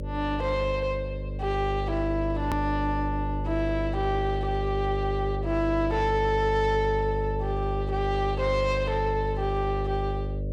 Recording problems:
distortion; soft clipping, signal-to-distortion ratio 11 dB
mains hum; 50 Hz, harmonics up to 600 Hz, SNR 4 dB
edit click; at 2.5 s

